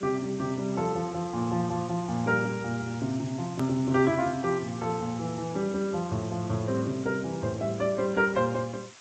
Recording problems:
lossy codec; AAC, then G.722, log-spectral distance 9 dB, nothing above 13.1 kHz
hiss; slope +1 dB per octave, SNR 18 dB
click at an edit; at 3.5 s

